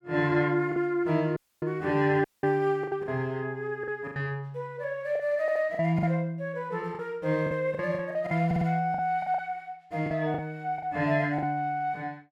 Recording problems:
lost packets; 8% of the sound replaced, filled with the last packet
dropout; at 1.5 s and at 2 s
audio stuttering; at 5.5 s and at 8.5 s

